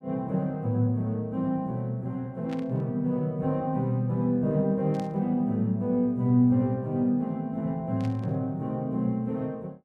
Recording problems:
static burst; at 2.5 s, at 5 s and at 8 s; peak -13 dB vs average level

